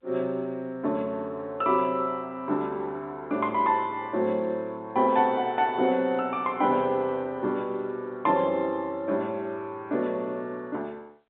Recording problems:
phone line; 190 Hz to 3.7 kHz, G.711

